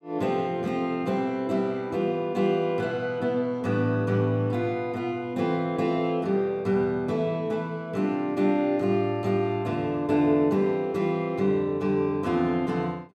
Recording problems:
none

